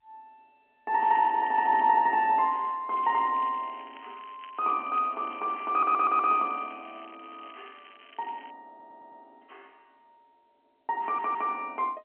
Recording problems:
telephone audio; 240 Hz to 3.6 kHz, G.711
crackle; at 1 s and from 3 to 8.5 s; loose cable, SNR 26 dB
stutter; at 5.5 s, at 8.5 s and at 11 s

